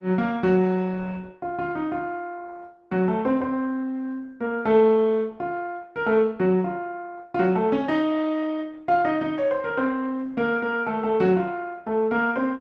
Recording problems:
lossy compression; Opus, log-spectral distance 2 dB

